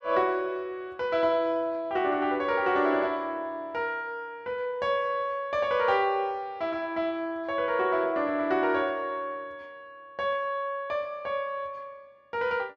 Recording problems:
none

